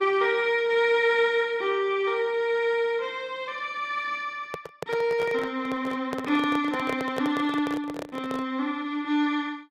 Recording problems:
lossy codec; Opus, log-spectral distance 2 dB
microphone handling noise; from 4.5 to 8.5 s; peak -2 dB vs average level

